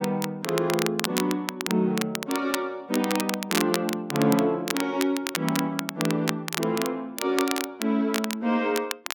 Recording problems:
crackle; vinyl, SNR 5 dB

